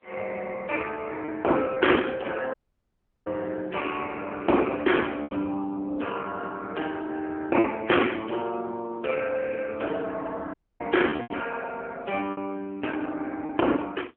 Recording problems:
phone line; 260 Hz to 3.3 kHz, AMR-NB
lost packets; 3% of the sound replaced, filled with repeated pitch periods
dropout; at 2.5 s for 0.5 s and at 11 s

